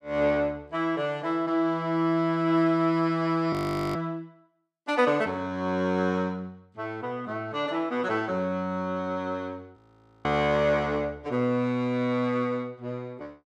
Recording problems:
audio freezing; at 3.5 s and at 10 s

